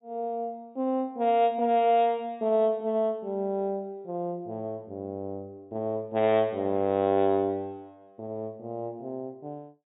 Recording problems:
treble cut off; nothing above 4 kHz

